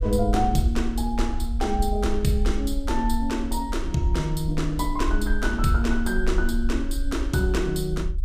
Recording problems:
rumble; below 52 Hz, SNR 4 dB

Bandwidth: 15 kHz